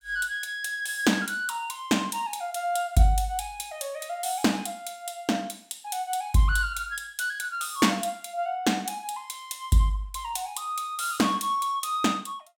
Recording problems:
none

